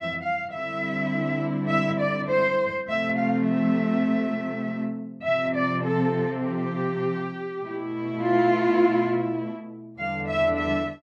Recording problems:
none

